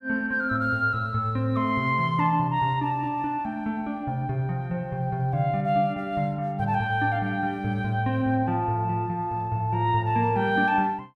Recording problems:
none

